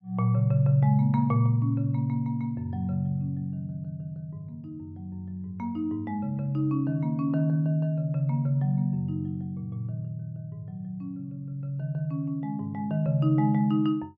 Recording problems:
none

